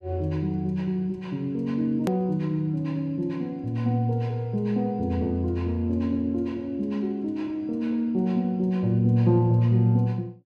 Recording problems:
edit click; at 2 s

